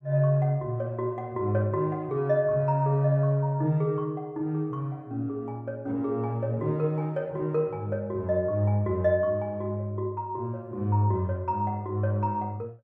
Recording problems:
none

